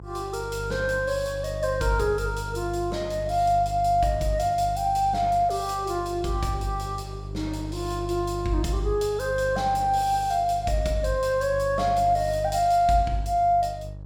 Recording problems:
hum; 50 Hz, harmonics up to 500 Hz, SNR 11 dB

